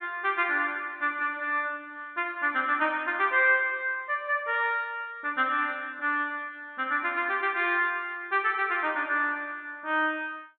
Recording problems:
low-pass filter; nothing above 4 kHz

